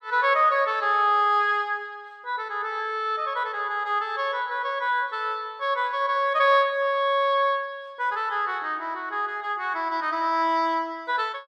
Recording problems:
none

